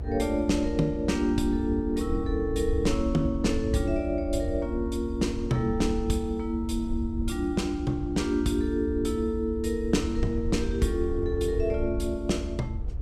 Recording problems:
electrical hum; 50 Hz, harmonics up to 450 Hz, SNR 24 dB
low-frequency rumble; below 78 Hz, SNR 7 dB
wind noise; below 500 Hz, SNR 22 dB

